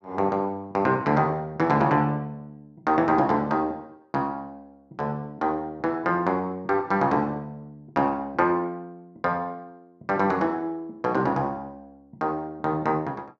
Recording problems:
none

